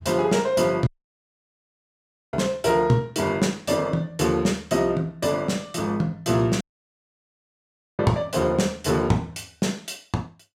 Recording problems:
audio cutting out; at 1 s for 1.5 s and at 6.5 s for 1.5 s

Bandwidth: 16 kHz